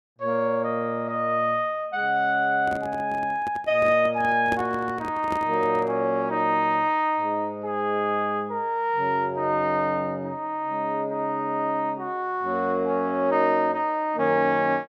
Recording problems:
microphone handling noise; from 2.5 to 6 s; peak -3 dB vs average level

